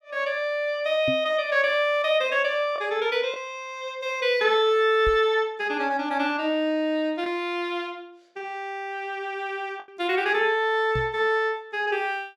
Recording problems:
lost packets; 1.2% of the sound replaced, filled with the last packet
microphone thump; at 1 s, at 5 s and at 11 s; peak -3 dB vs average level

